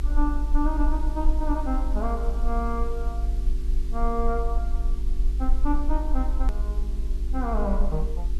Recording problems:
hum; 50 Hz, harmonics up to 400 Hz, SNR 12 dB
background hiss; slope -1 dB per octave, SNR 22 dB
rumble; below 50 Hz, strongest tone 22 Hz, SNR -3 dB
hard cut with a click; at 6.5 s

